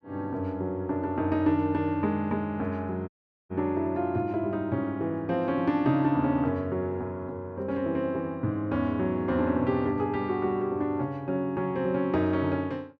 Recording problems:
dropout; at 3 s

